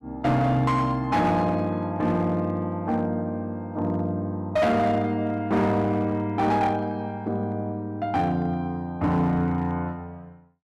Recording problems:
distortion; hard clipping, uneven, signal-to-distortion ratio 12 dB

